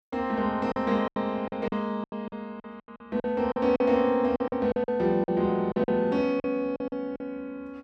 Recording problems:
packet loss; 14% of the sound replaced, filled with silence

